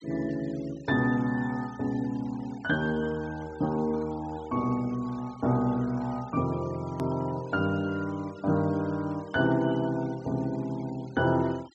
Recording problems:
low-pass filter; nothing above 8 kHz
denoising artefacts; signal-to-artefact ratio 23 dB
click at an edit; at 7 s

